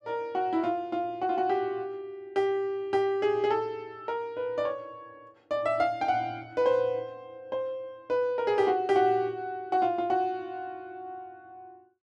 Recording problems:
none

